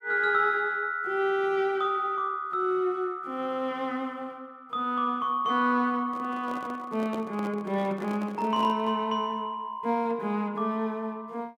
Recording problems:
handling noise; from 6 to 9 s; peak -6 dB vs average level

